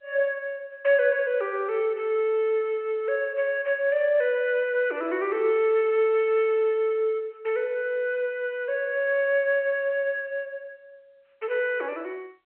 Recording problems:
telephone audio; 300 Hz to 4 kHz, G.711

